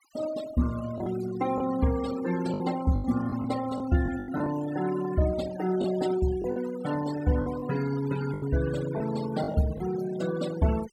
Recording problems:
noise reduction artefacts; signal-to-artefact ratio 14 dB
lost packets; 7% of the sound replaced, filled with the last packet

